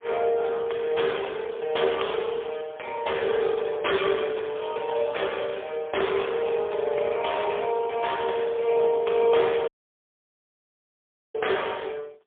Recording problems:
telephone audio; 340 Hz to 3.4 kHz, AMR-NB, then MP3
dropout; at 9.5 s for 1.5 s

